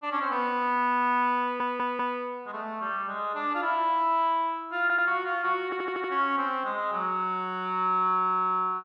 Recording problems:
stutter; at 1.5 s, at 5 s and at 5.5 s

